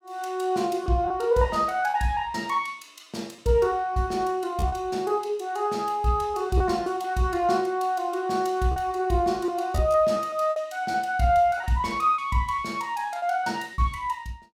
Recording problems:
lost packets; 6% of the sound replaced, filled with repeated pitch periods

